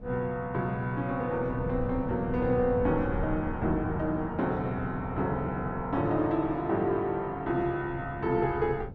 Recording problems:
wind noise; below 170 Hz, SNR 11 dB

